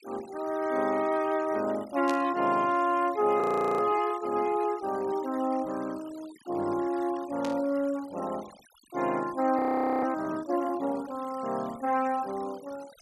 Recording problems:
denoising artefacts; signal-to-artefact ratio 20 dB
static burst; at 2 s and at 7.5 s; peak -6 dB vs average level
audio freezing; at 3.5 s and at 9.5 s

